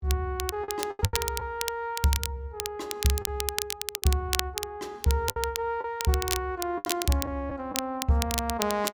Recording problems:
crackle; vinyl, SNR 3 dB
lost packets; 6% of the sound replaced, filled with the last packet

